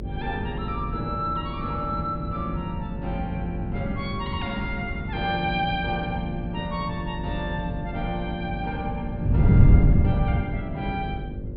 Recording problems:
treble cut off; nothing above 5.5 kHz
mains hum; 50 Hz, harmonics up to 600 Hz, SNR 7 dB
wind noise; below 160 Hz, SNR -2 dB

